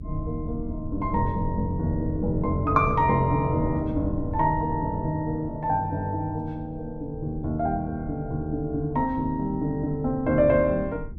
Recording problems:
low-frequency rumble; below 120 Hz, SNR 12 dB

